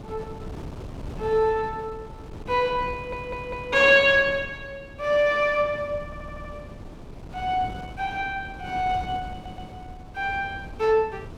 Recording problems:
wind on the microphone; below 350 Hz, SNR 17 dB
stutter; at 3 s, at 6 s and at 9.5 s

